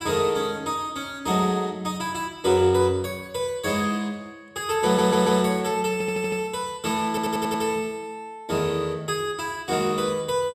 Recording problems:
stutter; at 5 s, at 6 s and at 7 s

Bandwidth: 15.5 kHz